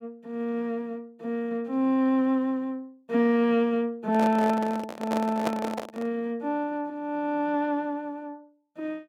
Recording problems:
microphone handling noise; from 4 to 6 s; peak +2 dB vs average level

